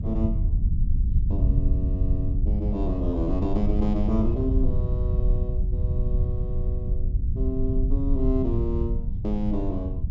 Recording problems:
low-pass filter; nothing above 8 kHz
low-frequency rumble; below 84 Hz, SNR -4 dB

